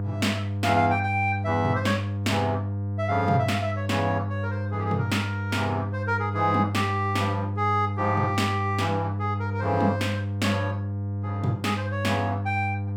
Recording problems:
hum; 50 Hz, harmonics up to 700 Hz, SNR 3 dB

